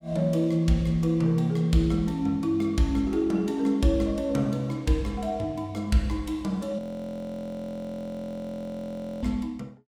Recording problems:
audio freezing; at 7 s for 2.5 s

